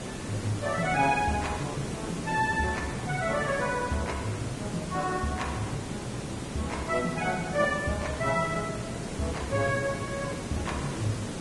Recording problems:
lossy codec; Vorbis, log-spectral distance 8 dB, nothing above 10.1 kHz
hiss; slope -5 dB per octave, SNR 5 dB

